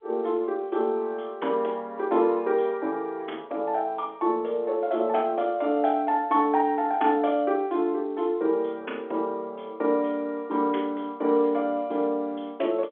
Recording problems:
phone line; 260 Hz to 3.5 kHz, G.711

